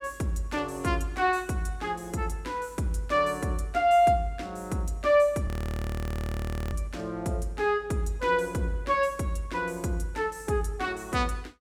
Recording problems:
audio freezing; at 5.5 s for 1.5 s

